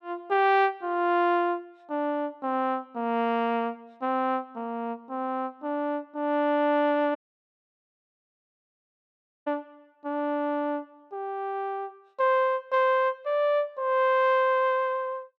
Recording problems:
audio cutting out; at 7 s for 2.5 s

